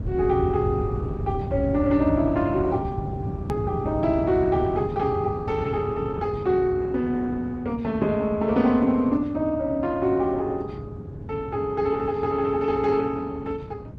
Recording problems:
lossy compression; Opus, log-spectral distance 2 dB
rumble; below 160 Hz, SNR 7 dB
hard cut with a click; at 3.5 s

